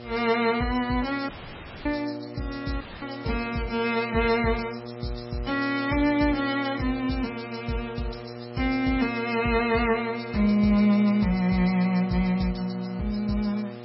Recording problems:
codec artefacts; MP3, log-spectral distance 8 dB, nothing above 5.5 kHz
electrical hum; 60 Hz, harmonics up to 1.9 kHz, SNR 14 dB
hiss; SNR 25 dB
audio cutting out; at 1.5 s for 0.5 s and at 3 s

